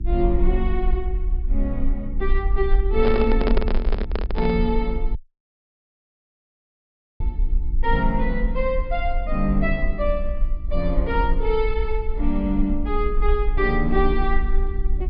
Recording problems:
treble cut off; nothing above 5.5 kHz
hum; 60 Hz, harmonics up to 360 Hz, SNR 17 dB
low-frequency rumble; below 46 Hz, strongest tone 22 Hz, SNR 1 dB
handling noise; from 3 to 4.5 s; peak +5 dB vs average level
dropout; at 5 s for 2 s

